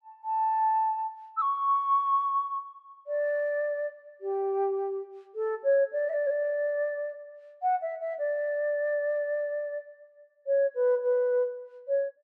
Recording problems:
none

